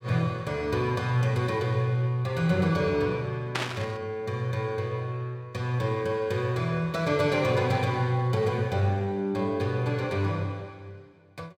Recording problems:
static burst; at 3.5 s; peak +3 dB vs average level

